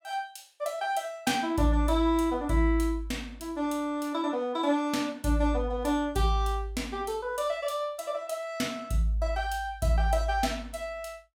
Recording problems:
none

